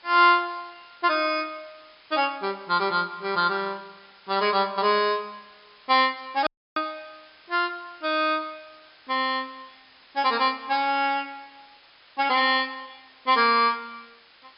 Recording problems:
low-pass filter; nothing above 5.5 kHz
background hiss; SNR 28 dB
audio cutting out; at 6.5 s

